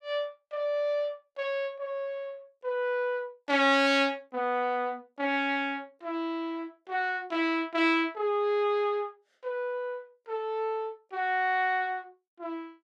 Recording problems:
none

